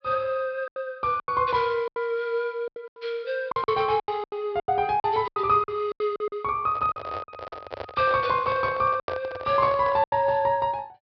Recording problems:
treble missing; nothing above 5.5 kHz
packet loss; 12% of the sound replaced, filled with silence
microphone handling noise; from 6.5 to 10 s; peak -2 dB vs average level

